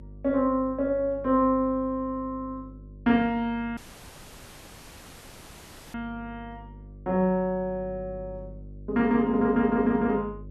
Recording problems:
hum; 50 Hz, harmonics up to 550 Hz, SNR 19 dB
dropout; at 4 s for 2 s

